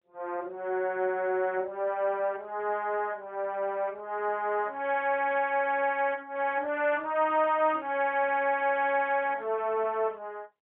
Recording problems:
phone line; 320 Hz to 3.3 kHz, AMR-NB

